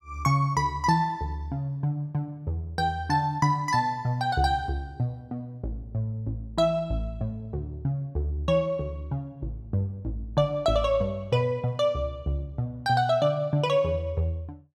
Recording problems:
none

